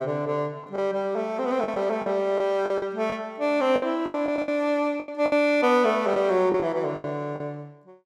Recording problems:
packet loss; 11% of the sound replaced, filled with the last packet

